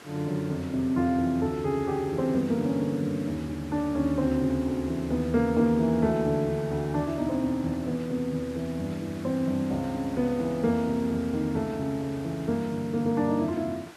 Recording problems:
background hiss; slope -4 dB per octave, SNR 19 dB

